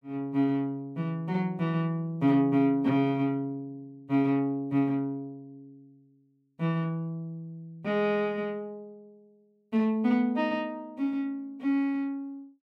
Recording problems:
none

